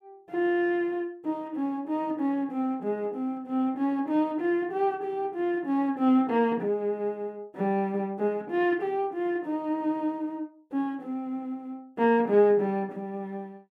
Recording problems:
none

